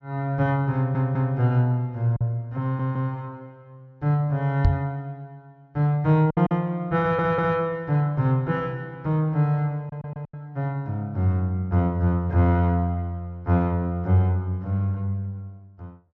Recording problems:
treble cut off; nothing above 7.1 kHz
lost packets; 1.6% of the sound replaced, filled with silence
audio stuttering; 4 times, first at 1 s
microphone bump; at 4.5 s; peak +7 dB vs average level

